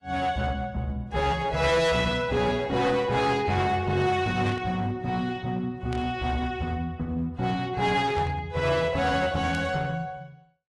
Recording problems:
codec artefacts; AAC, log-spectral distance 2 dB, nothing above 11.3 kHz
distortion; hard clipping, uneven, signal-to-distortion ratio 11 dB
static burst; 4 times, first at 4.5 s; peak -9 dB vs average level

